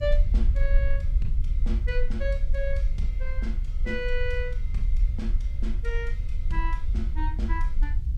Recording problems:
hiss; SNR 29 dB
low-frequency rumble; below 52 Hz, SNR -7 dB

